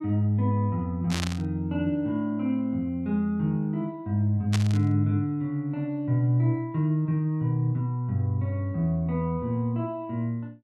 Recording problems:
static burst; at 1 s and at 4.5 s; peak -1 dB vs average level

